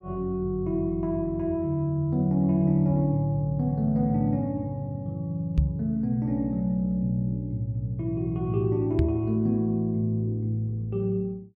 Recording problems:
microphone bump; at 5.5 s and at 9 s; peak +6 dB vs average level

